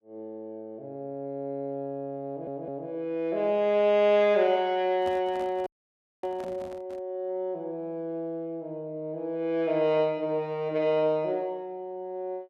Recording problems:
stutter; at 2.5 s
handling noise; from 5 to 7 s; peak -9 dB vs average level
audio freezing; at 5.5 s for 0.5 s

